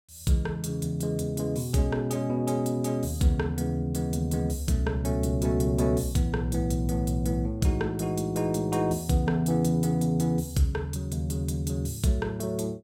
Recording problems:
none

